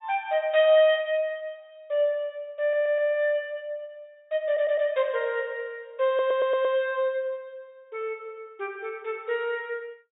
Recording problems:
treble missing; nothing above 4 kHz
stutter; at 2.5 s, at 4.5 s and at 6 s

